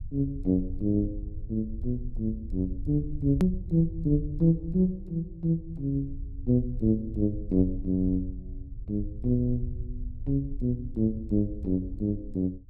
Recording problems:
low-frequency rumble; below 74 Hz, SNR 11 dB
hard cut with a click; at 3.5 s

